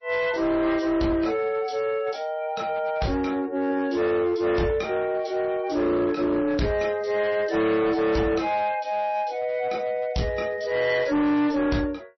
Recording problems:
lossy compression; MP3, log-spectral distance 2 dB, nothing above 5.8 kHz
distortion; hard clipping, uneven, signal-to-distortion ratio 10 dB

